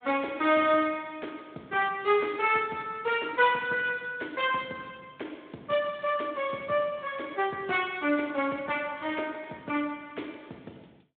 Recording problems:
telephone audio; 190 Hz to 3.7 kHz, Speex

